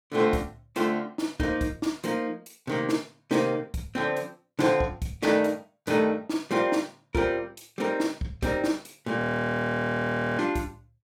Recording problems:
frozen audio; at 9 s for 1 s

